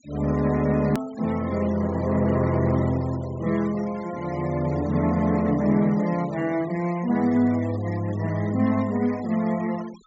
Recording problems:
low-pass filter; nothing above 8 kHz
noise reduction artefacts; signal-to-artefact ratio 21 dB
click at an edit; at 1 s

